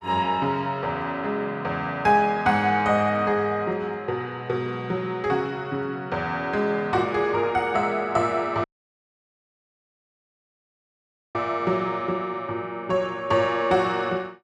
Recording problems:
dropout; at 8.5 s for 2.5 s

